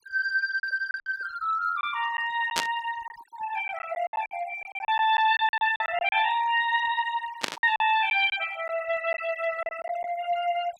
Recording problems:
noise reduction artefacts; signal-to-artefact ratio 17 dB
packet loss; 8% of the sound replaced, filled with silence
burst of static; at 2.5 s and at 7.5 s; peak +4 dB vs average level

